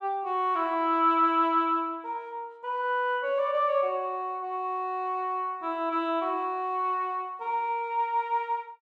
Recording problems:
none

